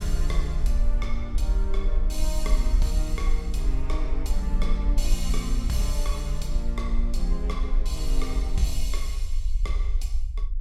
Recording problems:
rumble; below 46 Hz, SNR -5 dB

